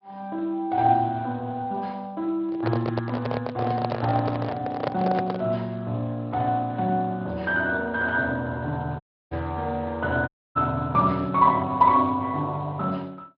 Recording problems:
treble missing; nothing above 5.5 kHz
lossy codec; Speex, log-spectral distance 3 dB
microphone handling noise; from 2.5 to 5.5 s; peak +2 dB vs average level
dropout; at 9 s and at 10 s

